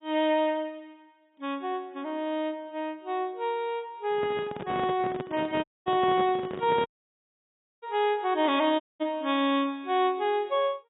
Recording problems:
lossy codec; AAC, log-spectral distance 2 dB, nothing above 3.1 kHz
microphone handling noise; from 4 to 7 s; peak -3 dB vs average level
dropout; at 5.5 s, at 7 s for 1 s and at 9 s

